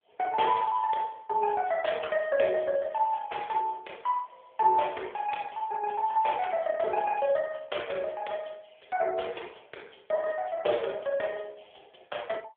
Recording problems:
telephone audio; 340 Hz to 3.5 kHz, AMR-NB

